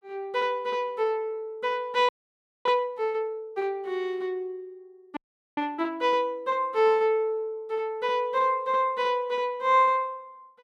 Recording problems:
frozen audio; at 2 s for 0.5 s and at 5 s

